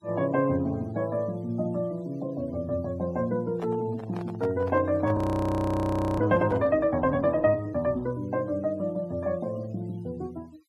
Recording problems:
noise reduction artefacts; signal-to-artefact ratio 27 dB
handling noise; from 3.5 to 7 s; peak -8 dB vs average level
audio freezing; at 5 s for 1 s

